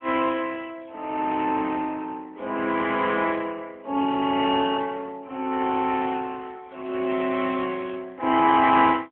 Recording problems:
phone line; 220 Hz to 3.3 kHz, AMR-NB

